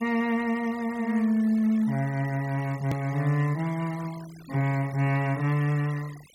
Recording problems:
noise reduction artefacts; signal-to-artefact ratio 20 dB
hard cut with a click; at 3 s

